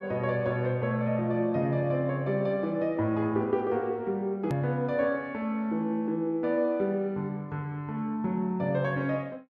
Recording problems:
hard cut with a click; at 4.5 s

